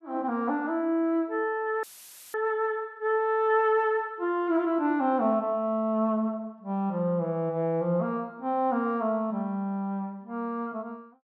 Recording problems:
audio cutting out; at 2 s for 0.5 s; filled with static

